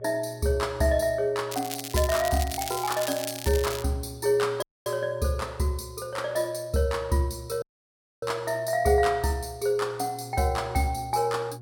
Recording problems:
hum; 60 Hz, harmonics up to 720 Hz, SNR 18 dB
crackle; from 1.5 to 4 s; loose cable, SNR 8 dB
audio cutting out; at 4.5 s and at 7.5 s for 0.5 s

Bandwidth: 17 kHz